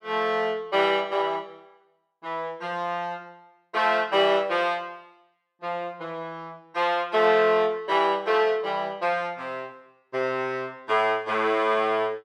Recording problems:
none

